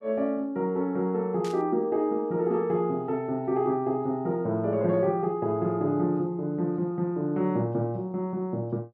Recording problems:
burst of static; at 1.5 s; peak -11 dB vs average level

